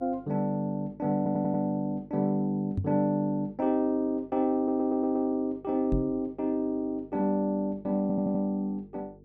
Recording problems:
hum; 50 Hz, harmonics up to 450 Hz, SNR 26 dB
stutter; at 1 s, at 4.5 s and at 8 s
microphone bump; at 3 s and at 6 s; peak +2 dB vs average level

